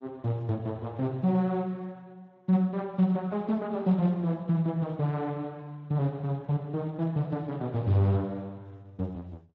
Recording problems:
codec artefacts; AAC, then Speex, log-spectral distance 2 dB

